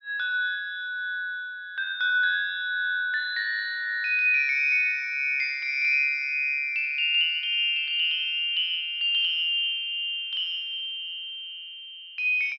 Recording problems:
treble missing; nothing above 5.5 kHz

